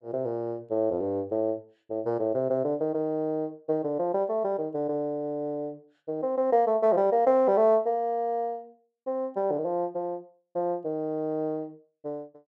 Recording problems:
none

